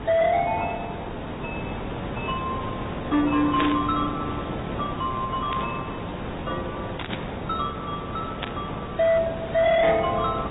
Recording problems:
treble cut off; nothing above 3.5 kHz
codec artefacts; AAC, then AAC, log-spectral distance 9 dB
distortion; hard clipping, signal-to-distortion ratio 11 dB
hiss; SNR 7 dB
static burst; 4 times, first at 3.5 s; peak 0 dB vs average level

